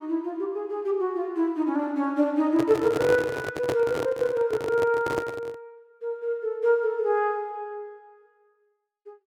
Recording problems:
handling noise; from 2.5 to 5.5 s; peak +2 dB vs average level

